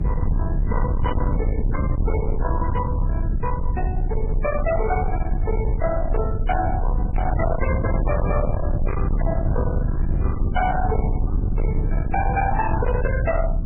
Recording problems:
lossy codec; MP3, log-spectral distance 2 dB, nothing above 2.4 kHz
distortion; hard clipping, signal-to-distortion ratio 7 dB
low-frequency rumble; below 120 Hz, SNR -2 dB

